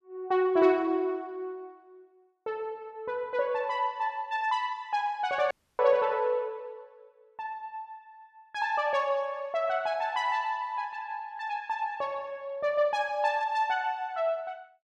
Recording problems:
audio cutting out; at 5.5 s

